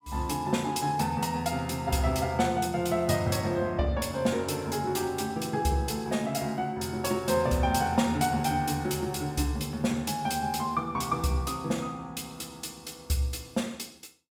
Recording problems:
none

